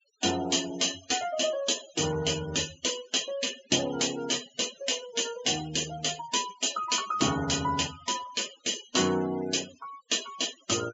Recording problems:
treble missing; nothing above 8 kHz
denoising artefacts; signal-to-artefact ratio 14 dB

